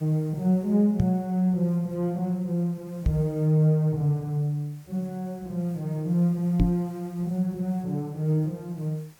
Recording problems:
background hiss; slope -2 dB per octave, SNR 29 dB
knock on the microphone; at 1 s, at 3 s and at 6.5 s; peak +5 dB vs average level

